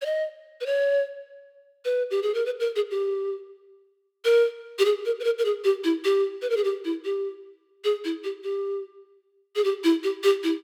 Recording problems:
none

